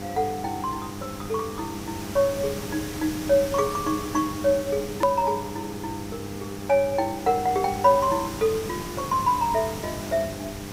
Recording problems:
hum; 50 Hz, harmonics up to 1.6 kHz, SNR 13 dB
hiss; slope -2 dB per octave, SNR 11 dB
hard cut with a click; at 5 s

